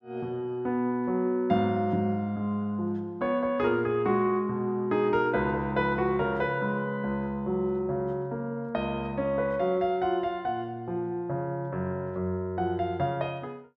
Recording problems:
none

